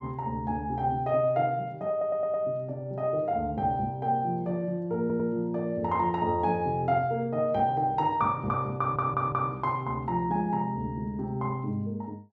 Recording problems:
audio stuttering; at 2 s, at 5 s and at 9 s

